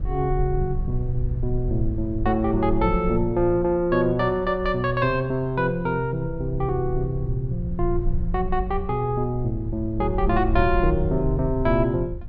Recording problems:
treble cut off; nothing above 8 kHz
rumble; below 64 Hz, SNR 8 dB

